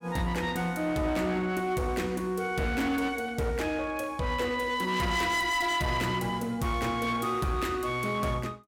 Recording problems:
distortion; hard clipping, uneven, signal-to-distortion ratio 10 dB

